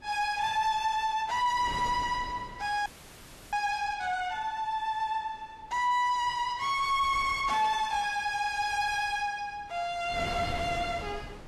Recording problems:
lossy compression; Vorbis, log-spectral distance 3 dB, nothing above 12.3 kHz
distorted audio; soft clipping, signal-to-distortion ratio 9 dB
wind noise; below 830 Hz, SNR 11 dB
frozen audio; at 3 s for 0.5 s

